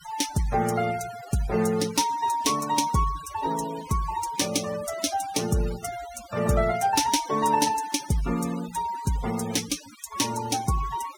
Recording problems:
denoising artefacts; signal-to-artefact ratio 15 dB

